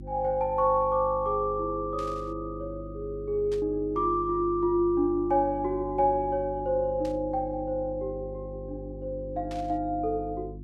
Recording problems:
electrical hum; 50 Hz, harmonics up to 350 Hz, SNR 14 dB
static burst; 4 times, first at 2 s; peak -13 dB vs average level

